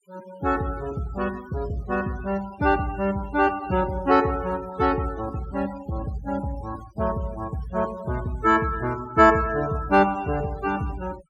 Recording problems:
noise reduction artefacts; signal-to-artefact ratio 20 dB

